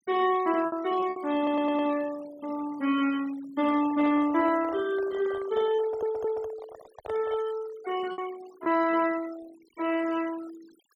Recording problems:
noise reduction artefacts; signal-to-artefact ratio 20 dB
lost packets; 3% of the sound replaced, filled with repeated pitch periods
stutter; at 1.5 s and at 6 s
handling noise; from 3.5 to 7.5 s; peak -9 dB vs average level

